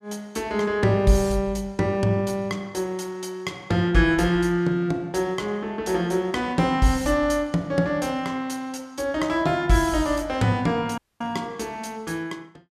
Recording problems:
audio cutting out; at 11 s

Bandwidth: 14.5 kHz